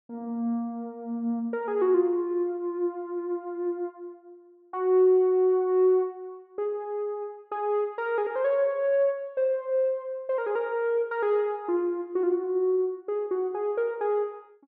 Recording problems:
none

